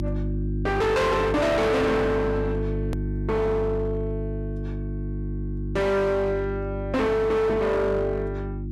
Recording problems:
distorted audio; hard clipping, signal-to-distortion ratio 6 dB
electrical hum; 50 Hz, harmonics up to 350 Hz, SNR 6 dB
edit click; at 3 s

